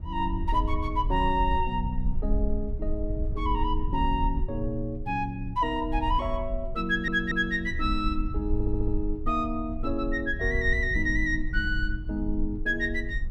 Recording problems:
low-frequency rumble; below 56 Hz, SNR 5 dB
audio stuttering; at 7 s and at 8.5 s

